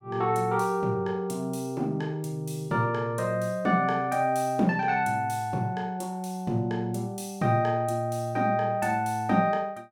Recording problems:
none

